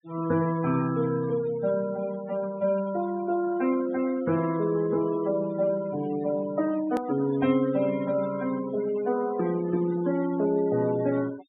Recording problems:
low-pass filter; nothing above 4 kHz
noise reduction artefacts; signal-to-artefact ratio 18 dB
hard cut with a click; at 7 s

